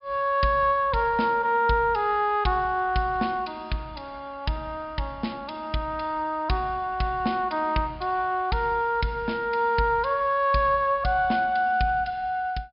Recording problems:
treble cut off; nothing above 5.5 kHz

